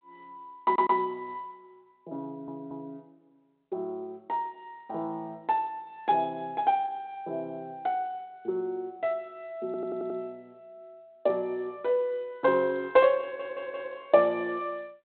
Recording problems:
phone line; 240 Hz to 4 kHz, G.726
audio stuttering; 4 times, first at 0.5 s

